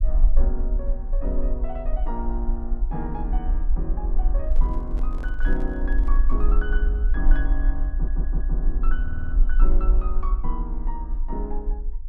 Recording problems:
low-frequency rumble; below 42 Hz, strongest tone 20 Hz, SNR -8 dB
microphone handling noise; from 4.5 to 6.5 s; peak -5 dB vs average level
audio stuttering; at 8 s and at 9 s

